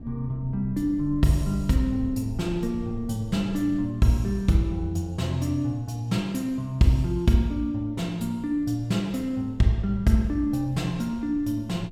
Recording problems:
low-frequency rumble; below 120 Hz, SNR 17 dB

